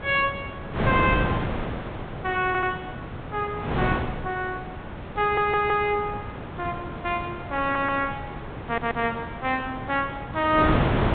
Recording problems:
low-pass filter; nothing above 4 kHz
wind noise; below 830 Hz, SNR 5 dB
audio stuttering; 4 times, first at 2.5 s

